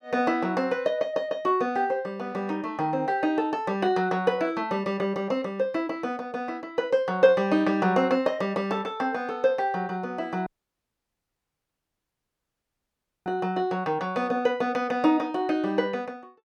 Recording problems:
audio cutting out; at 10 s for 3 s

